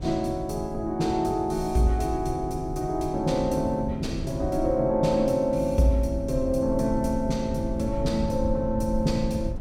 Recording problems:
rumble; below 120 Hz, SNR 10 dB

